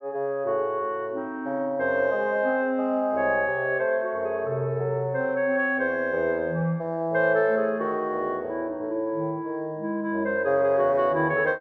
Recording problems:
none

